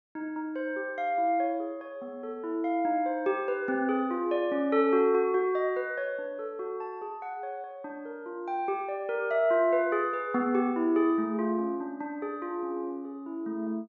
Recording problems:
treble cut off; nothing above 7.3 kHz

